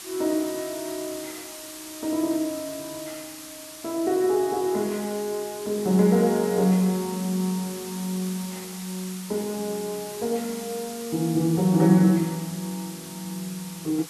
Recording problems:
background hiss; slope +1 dB per octave, SNR 13 dB

